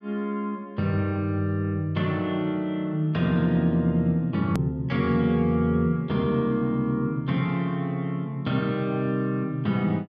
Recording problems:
hard cut with a click; at 4.5 s

